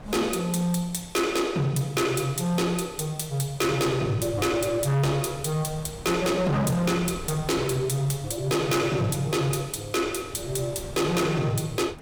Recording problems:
distorted audio; hard clipping, signal-to-distortion ratio 8 dB
wind noise; below 530 Hz, SNR 18 dB

